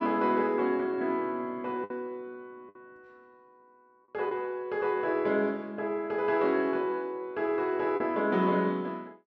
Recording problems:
packet loss; 2% of the sound replaced, filled with the last packet

